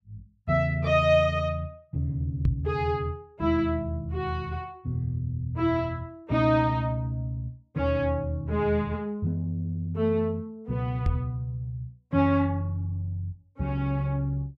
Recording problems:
knock on the microphone; at 2.5 s and at 11 s; peak +6 dB vs average level

